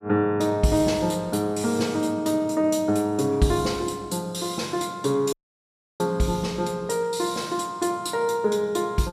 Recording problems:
dropout; at 5.5 s for 0.5 s

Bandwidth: 14 kHz